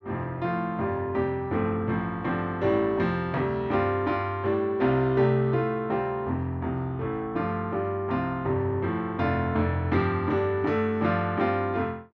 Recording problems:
none

